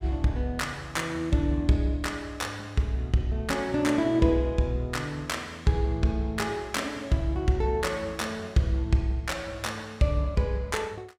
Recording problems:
none

